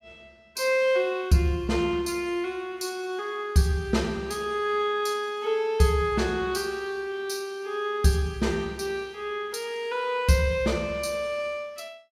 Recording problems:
none

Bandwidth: 16.5 kHz